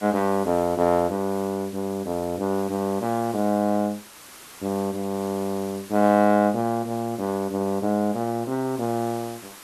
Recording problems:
background hiss; slope -1 dB per octave, SNR 19 dB

